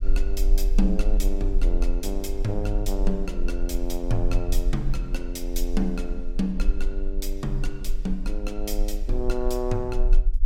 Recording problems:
rumble; below 36 Hz, strongest tone 26 Hz, SNR -1 dB

